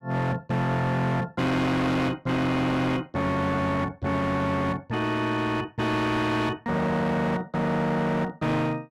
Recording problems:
distortion; hard clipping, signal-to-distortion ratio 7 dB

